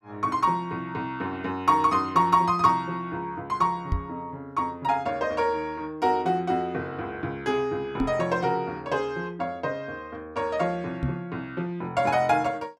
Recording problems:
microphone bump; at 4 s, at 8 s and at 11 s; peak +4 dB vs average level

